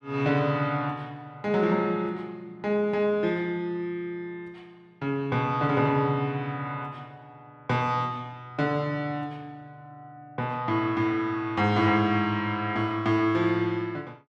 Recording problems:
none

